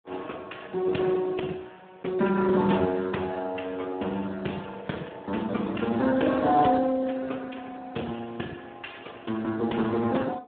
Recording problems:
telephone audio; 170 Hz to 3.4 kHz, Speex

